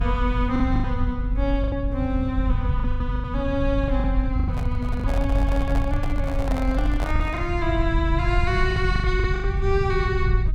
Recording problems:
rumble; below 90 Hz, SNR -1 dB
lost packets; 9% of the sound replaced, filled with the last packet
handling noise; from 4.5 to 7.5 s; peak -2 dB vs average level

